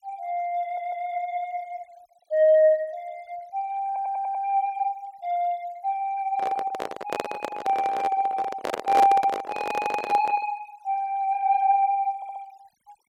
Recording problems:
noise reduction artefacts; signal-to-artefact ratio 27 dB
stutter; 4 times, first at 0.5 s
microphone handling noise; from 6.5 to 10 s; peak +2 dB vs average level

